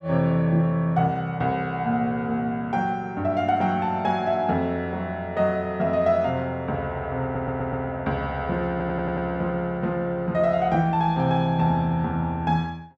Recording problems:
stutter; at 7 s and at 8.5 s

